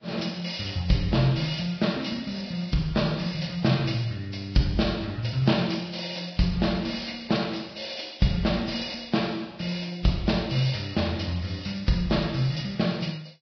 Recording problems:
codec artefacts; Vorbis, log-spectral distance 8 dB, nothing above 5.5 kHz

